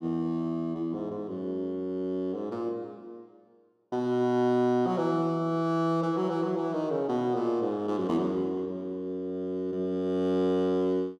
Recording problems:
none

